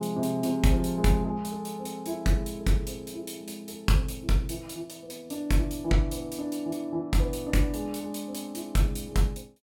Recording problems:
none

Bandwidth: 18 kHz